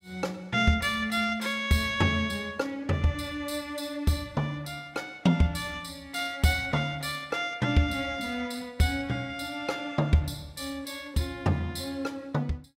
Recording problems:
none

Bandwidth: 16 kHz